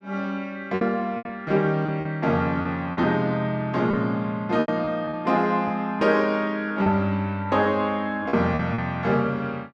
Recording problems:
lost packets; 7% of the sound replaced, filled with repeated pitch periods

